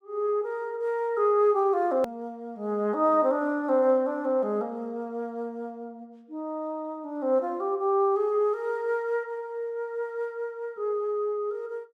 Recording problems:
hard cut with a click; at 2 s

